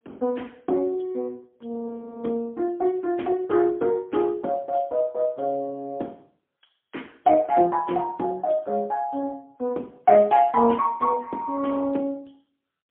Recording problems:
telephone audio; 240 Hz to 2.2 kHz, AMR-NB, then MP3

